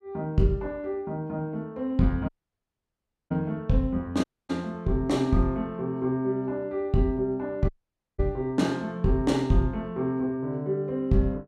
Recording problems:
dropout; at 2.5 s for 1 s, at 4 s and at 7.5 s

